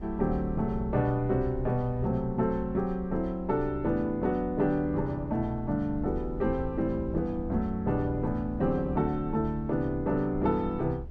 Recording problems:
low-frequency rumble; below 68 Hz, SNR 12 dB

